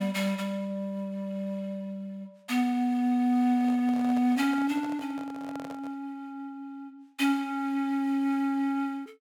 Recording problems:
microphone handling noise; from 3.5 to 6 s; peak -10 dB vs average level

